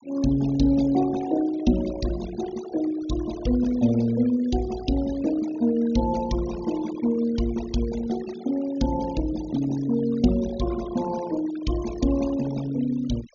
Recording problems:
treble missing; nothing above 6.8 kHz
denoising artefacts; signal-to-artefact ratio 16 dB

